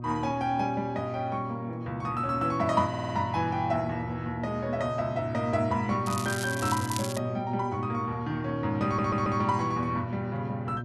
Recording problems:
electrical hum; 60 Hz, harmonics up to 720 Hz, SNR 7 dB
audio stuttering; at 3 s and at 9 s
crackling; from 6 to 7 s; loose cable, SNR 8 dB

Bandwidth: 12 kHz